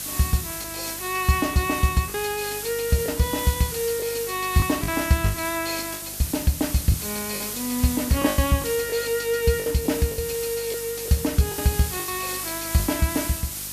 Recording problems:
hum; 50 Hz, harmonics up to 950 Hz, SNR 22 dB
background hiss; slope +1 dB per octave, SNR 6 dB
lost packets; 7% of the sound replaced, filled with the last packet

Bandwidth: 14.5 kHz